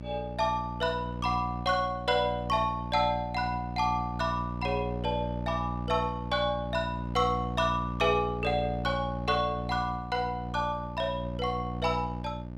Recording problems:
mains hum; 60 Hz, harmonics up to 960 Hz, SNR 6 dB

